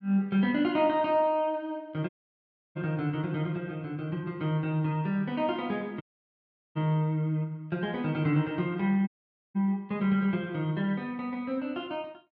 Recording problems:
audio cutting out; at 2 s for 0.5 s, at 6 s for 0.5 s and at 9 s

